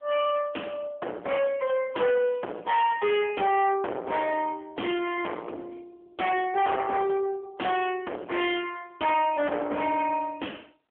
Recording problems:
telephone audio; 320 Hz to 3.3 kHz, AMR-NB
distorted audio; soft clipping, signal-to-distortion ratio 6 dB

